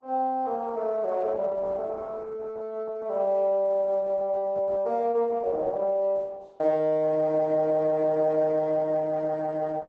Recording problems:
lossy compression; Opus, log-spectral distance 2 dB

